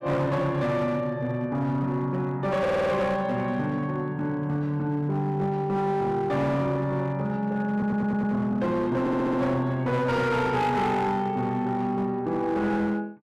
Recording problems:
distorted audio; hard clipping, signal-to-distortion ratio 11 dB
stutter; at 2.5 s, at 7.5 s and at 9 s

